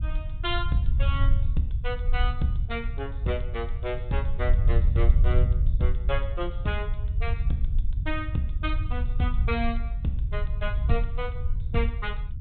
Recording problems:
low-pass filter; nothing above 4 kHz
rumble; below 74 Hz, SNR -4 dB

